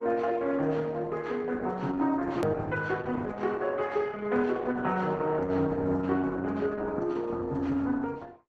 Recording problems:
lossy compression; Opus, log-spectral distance 3 dB, nothing above 13.1 kHz
hard cut with a click; at 2.5 s

